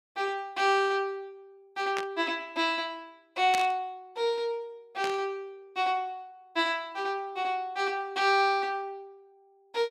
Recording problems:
static burst; at 2 s, at 3.5 s and at 5 s; peak +1 dB vs average level

